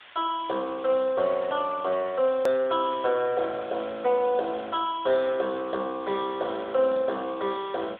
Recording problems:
phone line; 280 Hz to 3.5 kHz, AMR-NB
background hiss; SNR 21 dB
click at an edit; at 2.5 s

